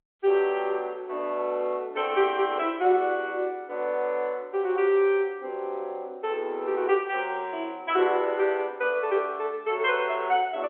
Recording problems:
phone line; 300 Hz to 3.5 kHz, G.711

